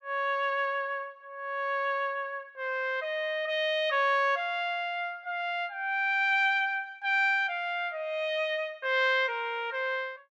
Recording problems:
none

